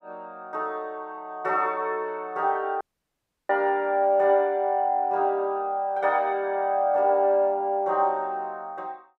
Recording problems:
dropout; at 3 s for 0.5 s

